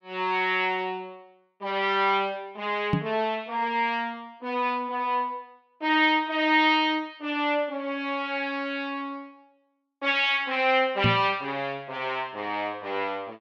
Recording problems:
microphone thump; at 3 s and at 11 s; peak +5 dB vs average level

